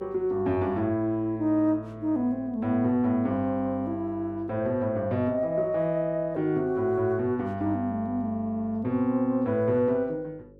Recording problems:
mains hum; 50 Hz, harmonics up to 550 Hz, SNR 26 dB

